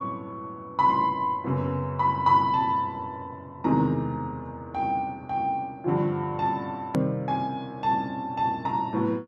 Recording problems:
click at an edit; at 7 s

